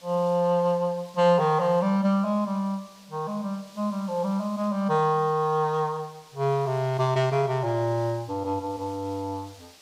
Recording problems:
hiss; slope 0 dB per octave, SNR 25 dB

